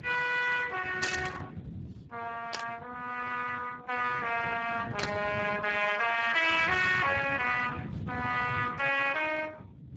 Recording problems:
codec artefacts; Opus, then Speex, log-spectral distance 5 dB, nothing above 7.3 kHz
low-frequency rumble; below 210 Hz, SNR 11 dB
static burst; at 1 s, at 2.5 s and at 5 s; peak +1 dB vs average level

